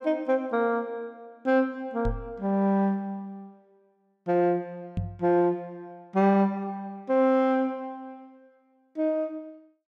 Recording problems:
knock on the microphone; at 2 s and at 5 s; peak 0 dB vs average level

